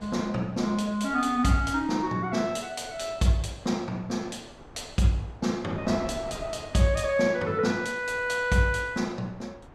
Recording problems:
wind noise; below 830 Hz, SNR 19 dB

